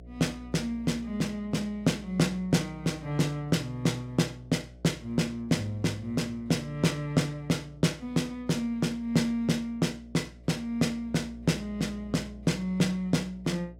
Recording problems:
hum; 60 Hz, harmonics up to 720 Hz, SNR 20 dB

